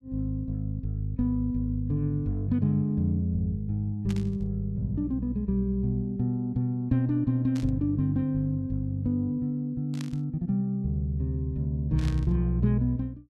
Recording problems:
static burst; 4 times, first at 4 s; peak -10 dB vs average level

